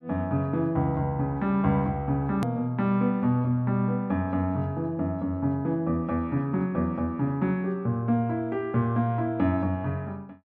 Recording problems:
edit click; at 2.5 s

